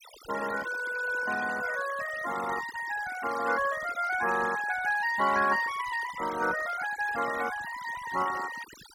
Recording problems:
noise reduction artefacts; signal-to-artefact ratio 13 dB

